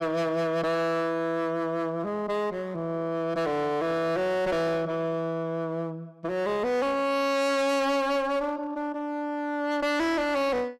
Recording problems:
distortion; hard clipping, uneven, signal-to-distortion ratio 5 dB

